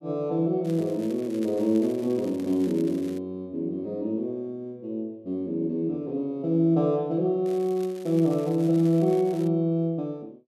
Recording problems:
crackle; from 0.5 to 3 s and from 7.5 to 9.5 s; loose cable, SNR 24 dB

